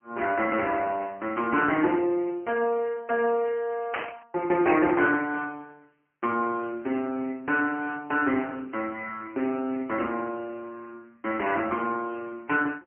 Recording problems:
telephone audio; 240 Hz to 3.1 kHz, AMR-NB
static burst; at 4 s; peak +1 dB vs average level

